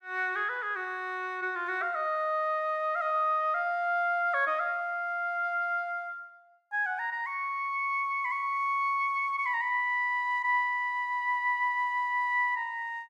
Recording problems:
none

